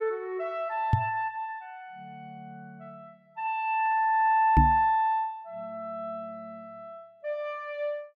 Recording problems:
microphone bump; at 1 s and at 4.5 s; peak +9 dB vs average level

